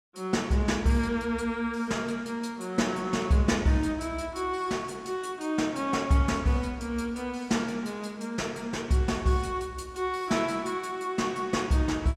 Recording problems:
none

